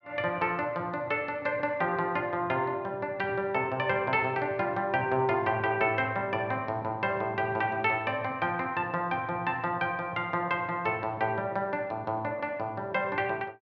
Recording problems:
none

